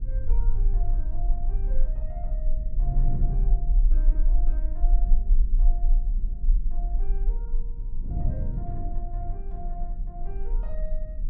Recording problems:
low-frequency rumble; below 38 Hz, strongest tone 28 Hz, SNR -14 dB
wind on the microphone; below 140 Hz, SNR -2 dB

